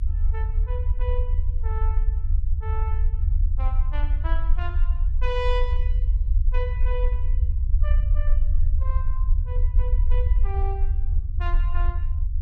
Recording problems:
rumble; below 60 Hz, SNR -12 dB

